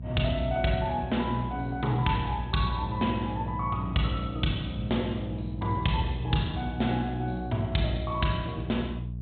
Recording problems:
treble cut off; nothing above 4 kHz
hum; 60 Hz, harmonics up to 240 Hz, SNR 7 dB

